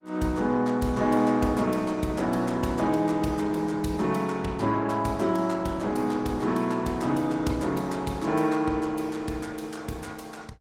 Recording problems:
lossy codec; Opus, log-spectral distance 3 dB, nothing above 17 kHz

